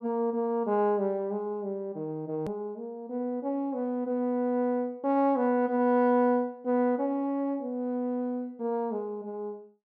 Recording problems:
click at an edit; at 2.5 s

